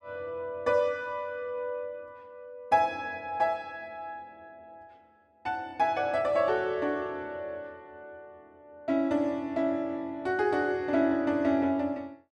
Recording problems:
none

